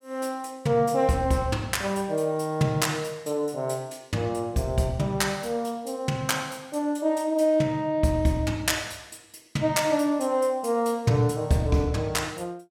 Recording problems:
none

